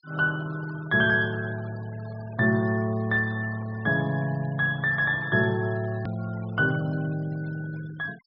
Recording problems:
low-pass filter; nothing above 5.5 kHz
denoising artefacts; signal-to-artefact ratio 23 dB
edit click; at 6 s

